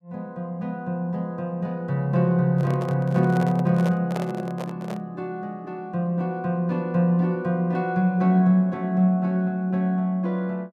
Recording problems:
handling noise; from 2.5 to 5 s; peak -4 dB vs average level

